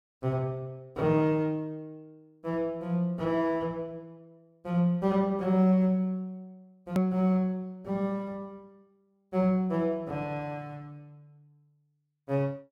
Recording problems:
hard cut with a click; at 7 s

